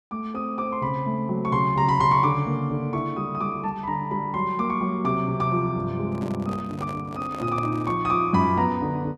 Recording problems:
microphone handling noise; from 6 to 8 s; peak -8 dB vs average level

